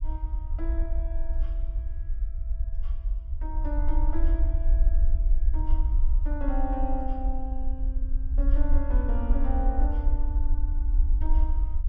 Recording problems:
rumble; below 50 Hz, SNR -9 dB

